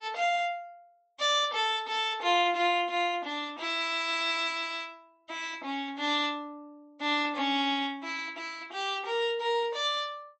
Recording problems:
codec artefacts; MP3, log-spectral distance 2 dB, nothing above 8 kHz

